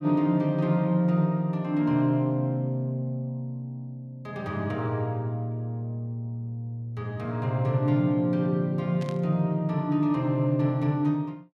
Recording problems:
burst of static; at 9 s; peak -13 dB vs average level

